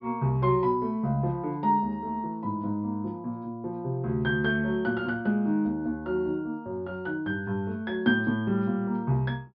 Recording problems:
low-pass filter; nothing above 5.5 kHz

